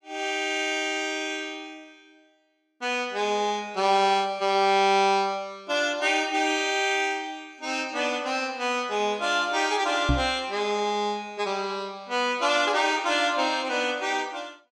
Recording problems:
knock on the microphone; at 10 s; peak +4 dB vs average level

